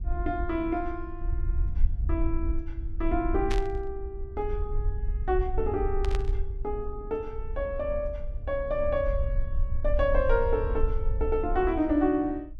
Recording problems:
low-frequency rumble; below 60 Hz, SNR 3 dB
static burst; at 3.5 s and at 6 s; peak -2 dB vs average level

